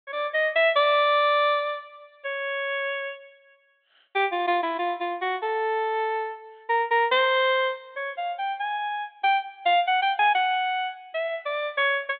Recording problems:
treble cut off; nothing above 4 kHz

